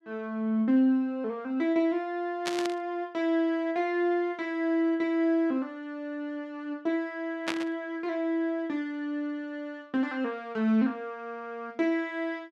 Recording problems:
burst of static; at 2.5 s and at 7.5 s; peak +2 dB vs average level

